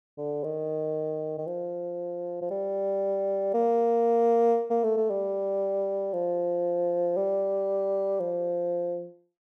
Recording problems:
none

